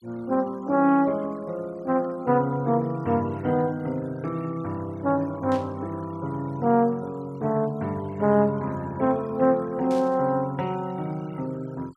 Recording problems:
denoising artefacts; signal-to-artefact ratio 25 dB
static burst; at 5.5 s and at 10 s; peak -14 dB vs average level

